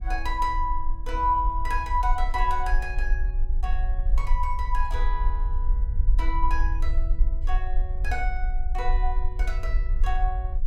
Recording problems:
low-frequency rumble; below 44 Hz, strongest tone 24 Hz, SNR -2 dB

